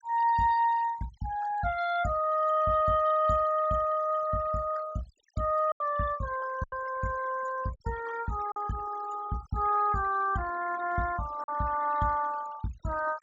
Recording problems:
treble cut off; nothing above 8 kHz
noise reduction artefacts; signal-to-artefact ratio 18 dB
packet loss; 2% of the sound replaced, filled with silence

